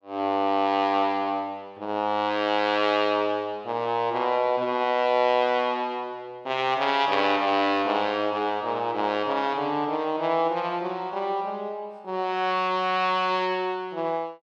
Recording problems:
none

